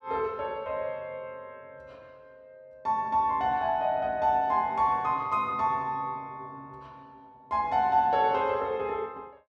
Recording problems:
none

